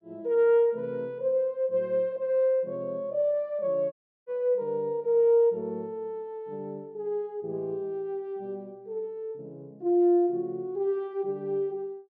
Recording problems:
audio cutting out; at 4 s

